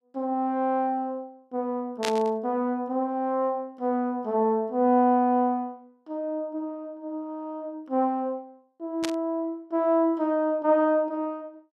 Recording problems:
static burst; at 2 s and at 9 s; peak +1 dB vs average level

